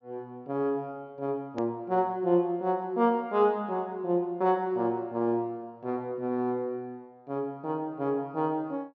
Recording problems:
low-pass filter; nothing above 7 kHz
hard cut with a click; at 1.5 s

